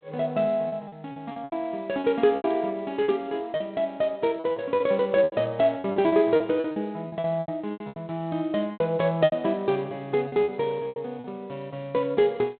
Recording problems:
phone line; 170 Hz to 3.7 kHz, G.726
packet loss; 12% of the sound replaced, filled with repeated pitch periods

